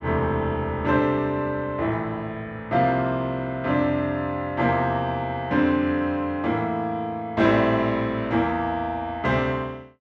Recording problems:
none

